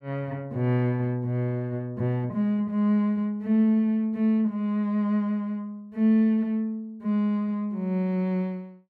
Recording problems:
none

